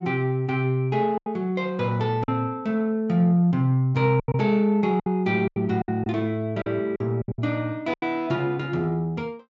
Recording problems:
low-pass filter; nothing above 8 kHz
lost packets; 8% of the sound replaced, filled with silence

